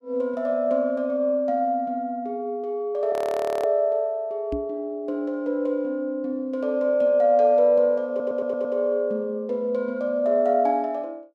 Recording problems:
frozen audio; at 3 s for 0.5 s
knock on the microphone; at 4.5 s; peak -3 dB vs average level
audio stuttering; at 8 s

